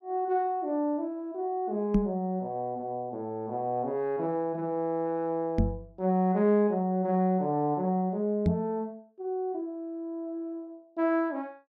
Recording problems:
knock on the microphone; at 2 s, at 5.5 s and at 8.5 s; peak +8 dB vs average level

